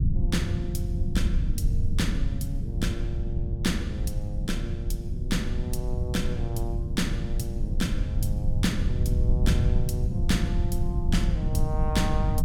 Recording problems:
low-frequency rumble; below 100 Hz, SNR -4 dB

